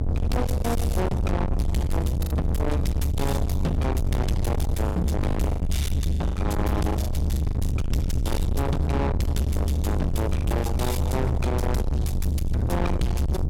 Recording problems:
distortion; soft clipping, signal-to-distortion ratio 5 dB
low-frequency rumble; below 200 Hz, SNR -1 dB
packet loss; 6% of the sound replaced, filled with the last packet

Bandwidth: 16.5 kHz